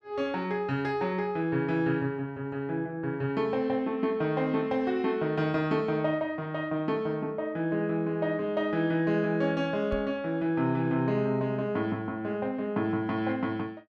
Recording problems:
microphone bump; at 10 s; peak -4 dB vs average level

